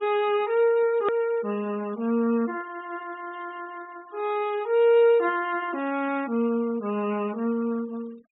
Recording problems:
treble cut off; nothing above 4 kHz
denoising artefacts; signal-to-artefact ratio 24 dB
edit click; at 1 s

